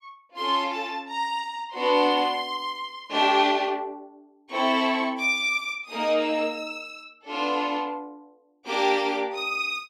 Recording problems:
none

